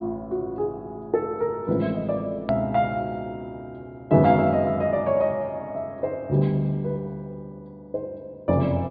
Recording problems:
low-pass filter; nothing above 4.8 kHz
click at an edit; at 2.5 s

